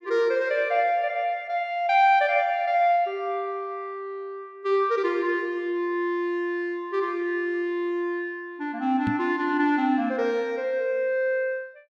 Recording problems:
microphone thump; at 9 s; peak -1 dB vs average level

